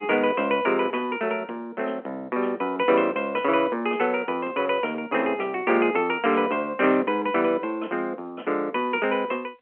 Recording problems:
phone line; 190 Hz to 3.3 kHz, G.711

